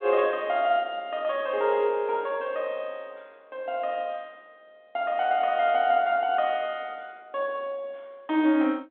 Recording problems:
phone line; 220 Hz to 3.7 kHz, G.726

